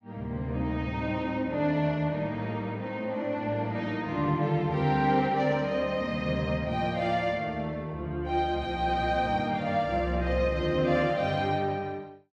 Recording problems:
none

